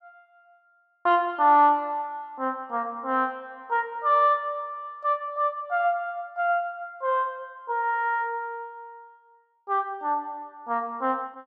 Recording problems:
none

